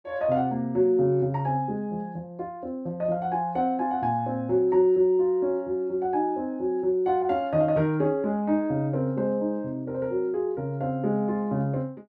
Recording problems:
none

